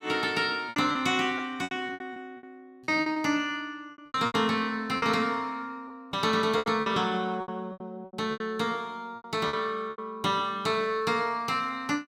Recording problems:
packet loss; 12% of the sound replaced, filled with repeated pitch periods

